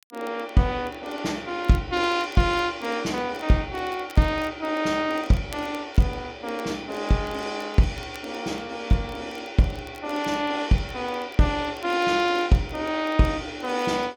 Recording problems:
crackling; vinyl, SNR 27 dB

